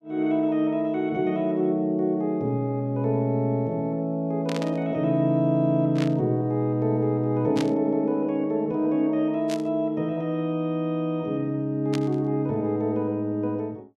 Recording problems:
static burst; 5 times, first at 4.5 s; peak -5 dB vs average level

